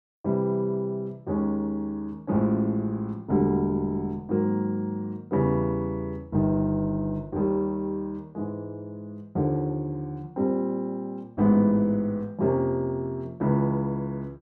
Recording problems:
none

